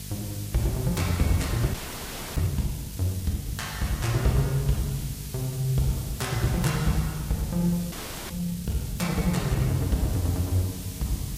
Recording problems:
codec artefacts; Vorbis, log-spectral distance 6 dB, nothing above 15.5 kHz
hum; 50 Hz, harmonics up to 700 Hz, SNR 14 dB
hiss; slope +4 dB per octave, SNR 13 dB
frozen audio; at 1.5 s for 0.5 s and at 8 s

